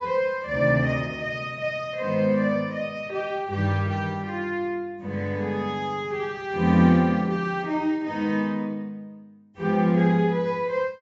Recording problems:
treble cut off; nothing above 8 kHz

